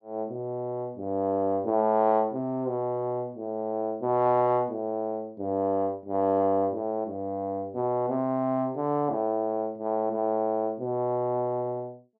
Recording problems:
none

